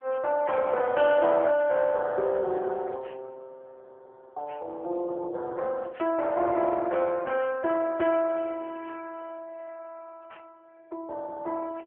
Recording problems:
phone line; 300 Hz to 3.3 kHz, AMR-NB

